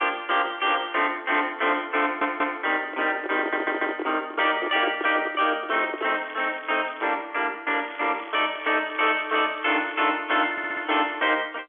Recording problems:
phone line; 260 Hz to 3.5 kHz, G.711
distortion; soft clipping, signal-to-distortion ratio 10 dB
audio stuttering; at 2 s, at 3.5 s and at 11 s
handling noise; from 3 to 6.5 s; peak -2 dB vs average level
crackling; from 6 to 7 s and from 8 to 10 s; loose cable, SNR 20 dB

